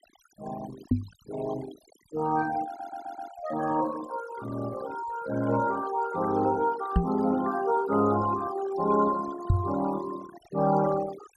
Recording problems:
noise reduction artefacts; signal-to-artefact ratio 14 dB
microphone thump; at 1 s, at 7 s and at 9.5 s; peak +8 dB vs average level
audio stuttering; at 2.5 s

